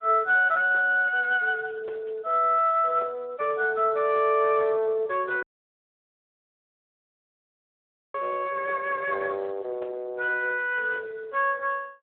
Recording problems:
telephone audio; 320 Hz to 3.3 kHz, Speex
dropout; at 5.5 s for 2.5 s

